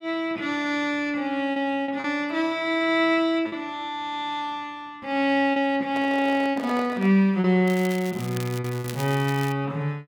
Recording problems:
packet loss; 4% of the sound replaced, filled with repeated pitch periods
handling noise; from 6 to 7 s; peak -6 dB vs average level
crackle; from 7.5 to 9.5 s; loose cable, SNR 15 dB

